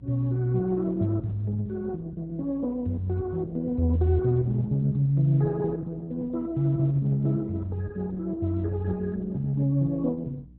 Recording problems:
lossy compression; Opus, log-spectral distance 2 dB, nothing above 3.9 kHz
mains hum; 60 Hz, harmonics up to 300 Hz, SNR 25 dB

